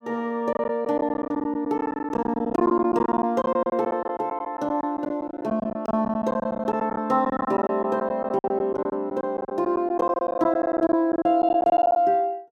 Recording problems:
packet loss; 16% of the sound replaced, filled with silence

